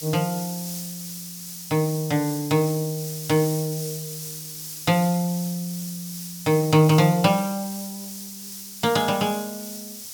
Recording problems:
hiss; SNR 11 dB

